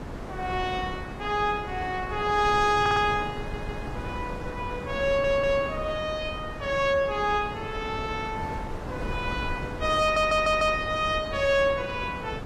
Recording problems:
lossy codec; AAC, log-spectral distance 2 dB, nothing above 14.3 kHz
wind noise; below 600 Hz, SNR 10 dB
audio stuttering; 4 times, first at 3 s

